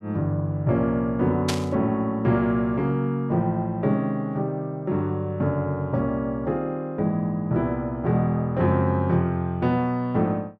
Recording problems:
static burst; at 1.5 s; peak +1 dB vs average level

